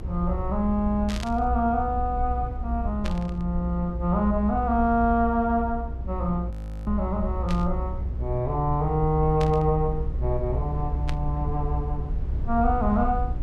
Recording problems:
hum; 60 Hz, harmonics up to 1.4 kHz, SNR 24 dB
low-frequency rumble; below 64 Hz, strongest tone 62 Hz, SNR 5 dB
burst of static; 5 times, first at 1 s; peak -6 dB vs average level
audio freezing; at 6.5 s

